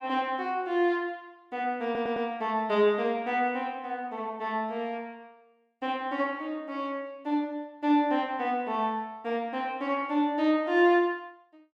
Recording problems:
stutter; at 2 s

